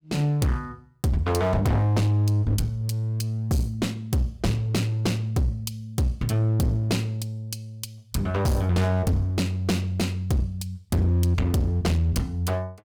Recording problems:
distorted audio; hard clipping, uneven, signal-to-distortion ratio 5 dB

